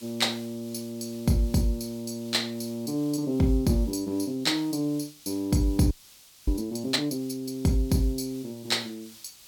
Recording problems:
background hiss; SNR 21 dB
frozen audio; at 6 s for 0.5 s

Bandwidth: 17.5 kHz